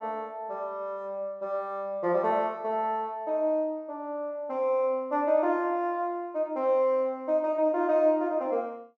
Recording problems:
none

